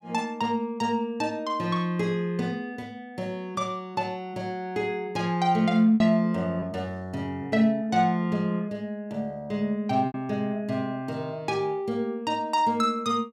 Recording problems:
packet loss; 1.4% of the sound replaced, filled with repeated pitch periods

